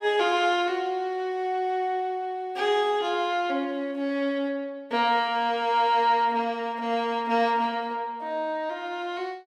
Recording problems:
none

